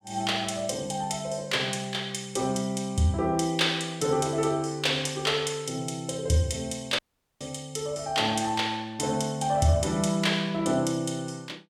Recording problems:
audio cutting out; at 7 s

